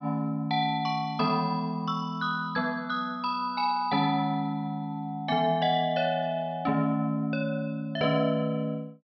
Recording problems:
treble missing; nothing above 5.5 kHz

